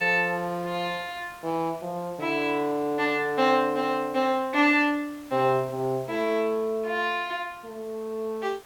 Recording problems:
hiss; slope -3 dB per octave, SNR 24 dB

